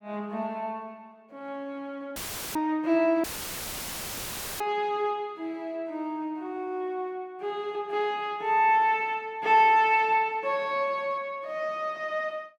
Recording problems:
dropout; at 2 s and at 3 s for 1.5 s; filled with static

